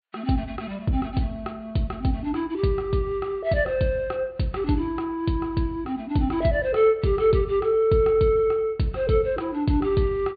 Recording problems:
treble missing; nothing above 4.7 kHz

